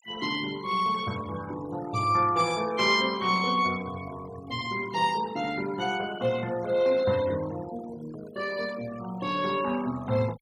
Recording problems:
noise reduction artefacts; signal-to-artefact ratio 17 dB

